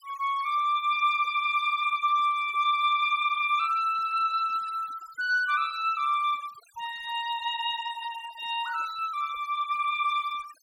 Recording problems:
noise reduction artefacts; signal-to-artefact ratio 20 dB

